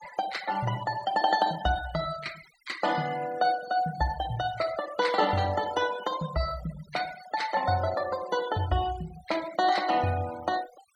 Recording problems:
noise reduction artefacts; signal-to-artefact ratio 15 dB

